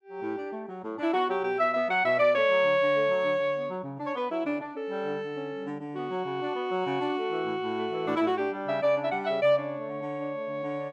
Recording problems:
none

